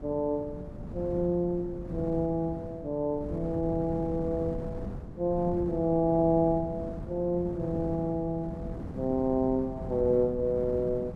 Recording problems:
wind noise; below 250 Hz, SNR 10 dB

